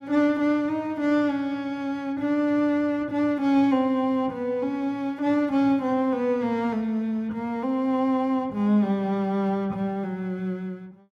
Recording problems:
none

